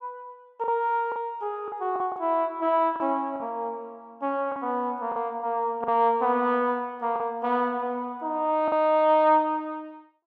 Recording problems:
packet loss; 5% of the sound replaced, filled with the last packet

